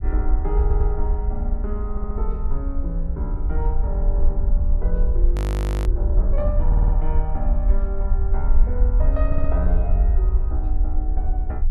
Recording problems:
low-frequency rumble; below 54 Hz, SNR -9 dB
audio stuttering; 4 times, first at 0.5 s
audio freezing; at 5.5 s for 0.5 s

